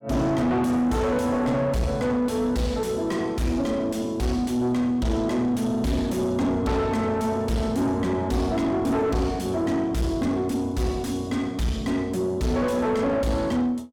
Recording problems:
distorted audio; soft clipping, signal-to-distortion ratio 6 dB

